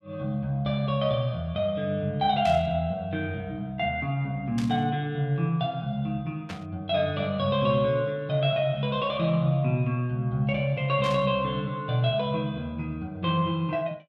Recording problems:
burst of static; 4 times, first at 2.5 s; peak -7 dB vs average level

